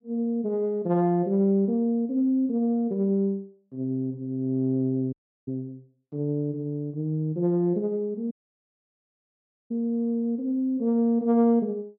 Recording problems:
audio cutting out; at 5 s and at 8.5 s for 1.5 s

